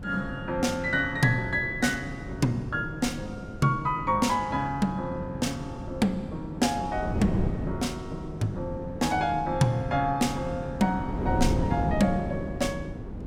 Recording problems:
wind on the microphone; below 300 Hz, SNR 7 dB

